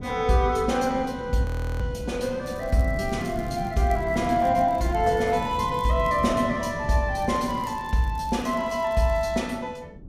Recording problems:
wind noise; below 250 Hz, SNR 12 dB
audio freezing; at 1.5 s
crackling; from 2.5 to 6.5 s and from 7 to 9.5 s; loose cable, SNR 28 dB

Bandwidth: 15.5 kHz